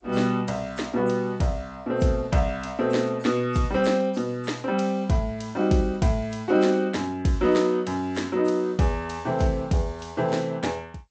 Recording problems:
codec artefacts; G.722, then AAC, log-spectral distance 2 dB, nothing above 7.8 kHz

